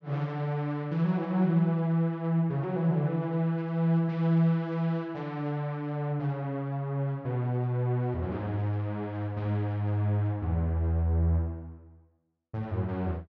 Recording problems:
none

